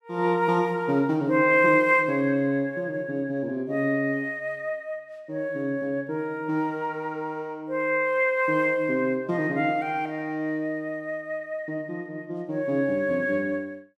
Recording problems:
none

